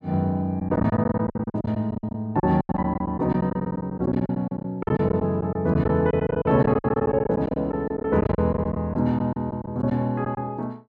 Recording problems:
packet loss; 16% of the sound replaced, filled with silence

